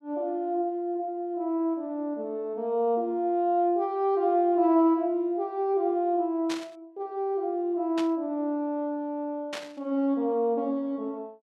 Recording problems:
static burst; at 6.5 s, at 8 s and at 9.5 s; peak -5 dB vs average level

